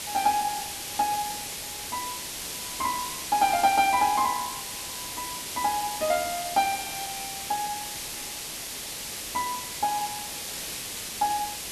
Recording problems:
hiss; SNR 5 dB

